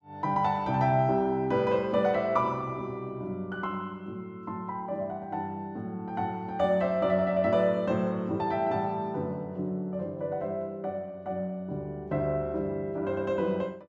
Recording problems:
none

